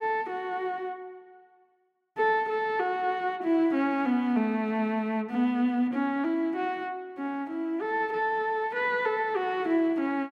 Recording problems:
none

